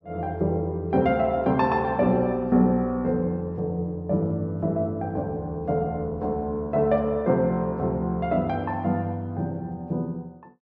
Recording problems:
none

